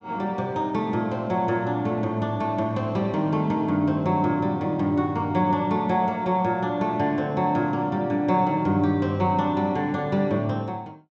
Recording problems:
treble cut off; nothing above 8 kHz

